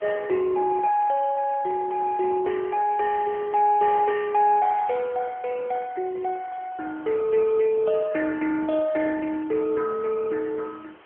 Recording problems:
phone line; 240 Hz to 2.3 kHz, AMR-NB
background hiss; SNR 26 dB

